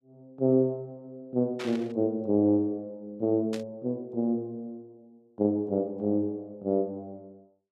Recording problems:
burst of static; at 1.5 s and at 3.5 s; peak -6 dB vs average level

